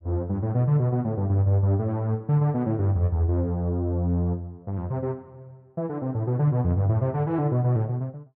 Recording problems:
none

